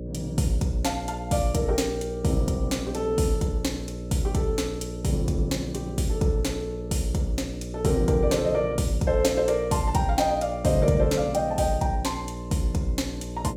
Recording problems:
mains hum; 60 Hz, harmonics up to 600 Hz, SNR 9 dB

